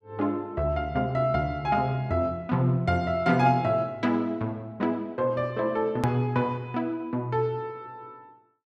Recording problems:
click at an edit; at 6 s

